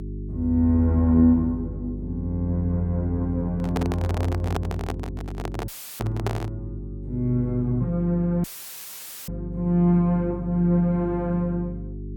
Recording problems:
hum; 50 Hz, harmonics up to 400 Hz, SNR 10 dB
microphone handling noise; from 3.5 to 6.5 s; peak -1 dB vs average level
dropout; at 5.5 s and at 8.5 s for 1 s; filled with static

